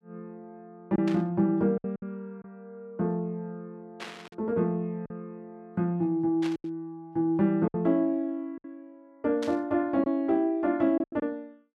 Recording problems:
lost packets; 5% of the sound replaced, filled with silence
static burst; 4 times, first at 1 s; peak -7 dB vs average level

